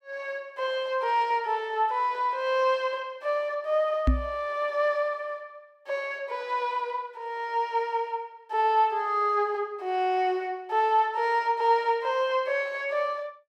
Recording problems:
microphone thump; at 4 s; peak +7 dB vs average level

